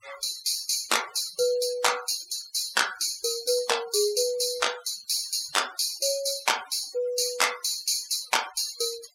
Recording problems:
noise reduction artefacts; signal-to-artefact ratio 15 dB

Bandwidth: 16.5 kHz